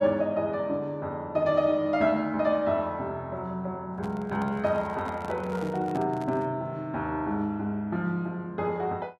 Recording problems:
microphone handling noise; from 4 to 6.5 s; peak -9 dB vs average level

